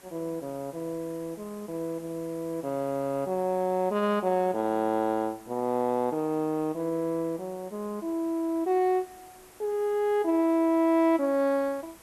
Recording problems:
background hiss; slope -4 dB per octave, SNR 24 dB

